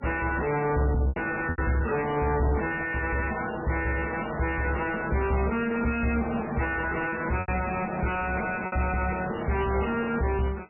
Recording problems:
lossy codec; MP3, log-spectral distance 7 dB, nothing above 2.4 kHz
distorted audio; soft clipping, signal-to-distortion ratio 5 dB
lost packets; 3% of the sound replaced, filled with repeated pitch periods

